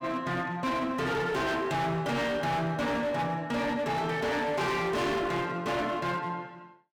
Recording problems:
distortion; hard clipping, signal-to-distortion ratio 7 dB

